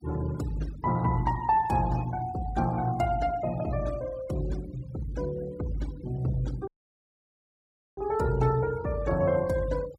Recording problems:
noise reduction artefacts; signal-to-artefact ratio 19 dB
dropout; at 6.5 s for 1.5 s

